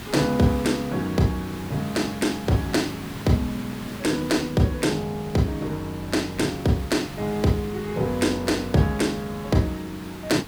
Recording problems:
hiss; SNR 14 dB

